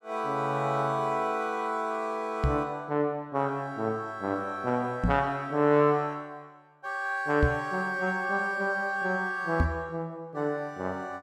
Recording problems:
microphone bump; 4 times, first at 2.5 s; peak +7 dB vs average level

